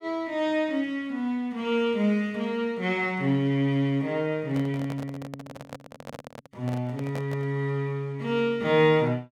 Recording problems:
microphone handling noise; from 4.5 to 7.5 s; peak -7 dB vs average level

